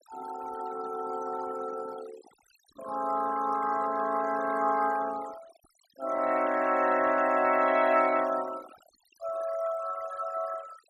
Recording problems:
noise reduction artefacts; signal-to-artefact ratio 16 dB

